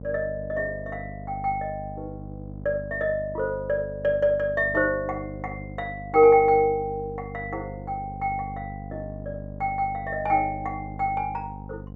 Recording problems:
hum; 50 Hz, harmonics up to 750 Hz, SNR 13 dB

